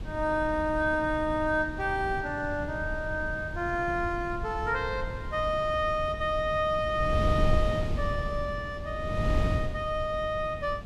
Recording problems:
wind on the microphone; below 150 Hz, SNR 6 dB

